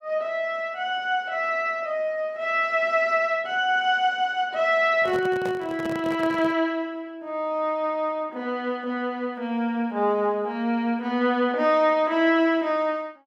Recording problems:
handling noise; from 5 to 6.5 s; peak -6 dB vs average level

